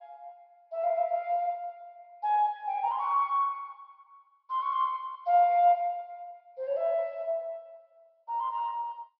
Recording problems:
treble missing; nothing above 5.5 kHz
codec artefacts; MP2, log-spectral distance 2 dB

